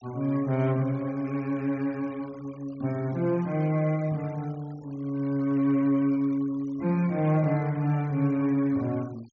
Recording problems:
low-pass filter; nothing above 6.8 kHz
denoising artefacts; signal-to-artefact ratio 25 dB

